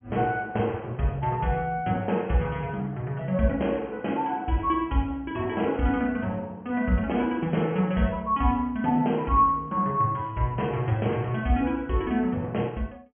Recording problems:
low-pass filter; nothing above 3.3 kHz

